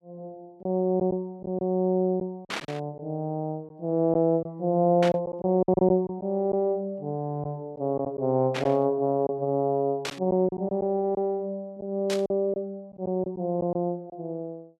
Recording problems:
lost packets; 5% of the sound replaced, filled with silence
static burst; 5 times, first at 2.5 s; peak -1 dB vs average level

